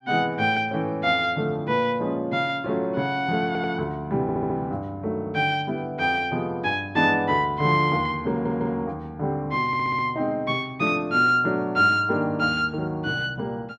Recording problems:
stutter; 4 times, first at 3.5 s

